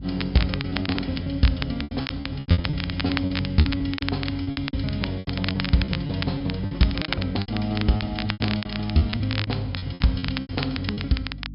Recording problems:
treble missing; nothing above 5.5 kHz
electrical hum; 50 Hz, harmonics up to 300 Hz, SNR 12 dB
crackle; vinyl, SNR 8 dB
packet loss; 17% of the sound replaced, filled with repeated pitch periods

